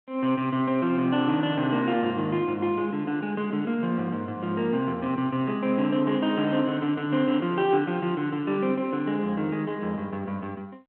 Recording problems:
telephone audio; 220 Hz to 3.9 kHz, G.726

